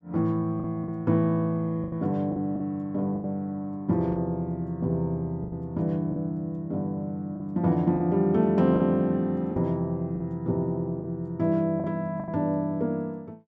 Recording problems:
packet loss; 6% of the sound replaced, filled with the last packet

